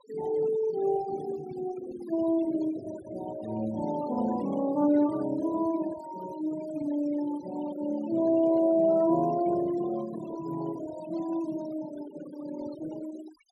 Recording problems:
denoising artefacts; signal-to-artefact ratio 17 dB

